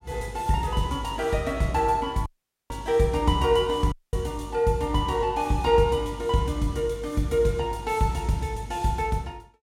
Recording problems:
audio cutting out; at 2.5 s and at 4 s

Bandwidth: 16 kHz